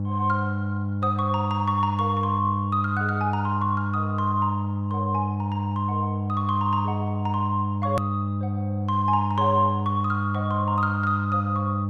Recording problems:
electrical hum; 50 Hz, harmonics up to 600 Hz, SNR 1 dB
edit click; at 8 s

